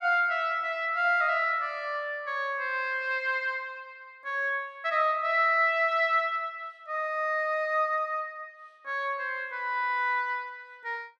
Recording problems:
none

